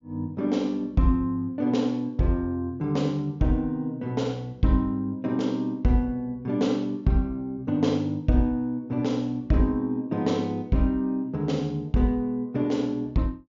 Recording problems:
treble missing; nothing above 7.2 kHz

